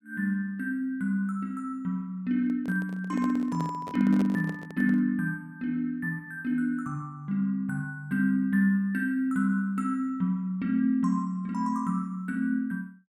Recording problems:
microphone handling noise; from 2.5 to 5 s; peak -3 dB vs average level

